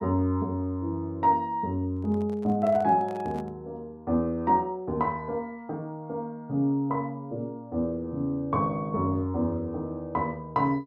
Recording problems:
microphone handling noise; from 2 to 3.5 s; peak -10 dB vs average level

